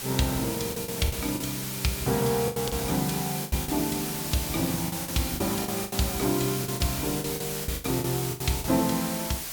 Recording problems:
background hiss; slope 0 dB per octave, SNR 3 dB
wind noise; below 590 Hz, SNR 23 dB
packet loss; 11% of the sound replaced, filled with the last packet

